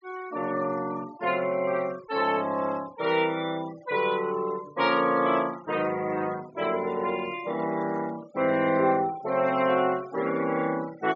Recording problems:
treble cut off; nothing above 7.2 kHz
denoising artefacts; signal-to-artefact ratio 19 dB

